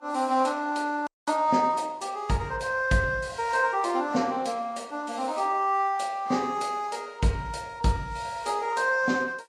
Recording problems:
lossy codec; Vorbis, log-spectral distance 3 dB
audio freezing; at 1 s

